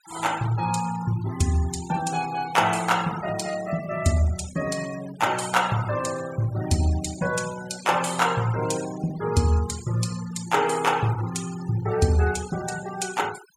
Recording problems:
denoising artefacts; signal-to-artefact ratio 15 dB

